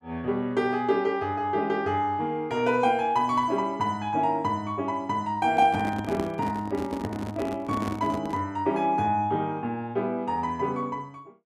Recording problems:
handling noise; from 5.5 to 8.5 s; peak -2 dB vs average level

